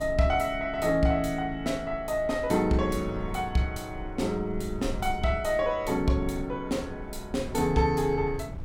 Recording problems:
wind on the microphone; below 80 Hz, SNR 14 dB

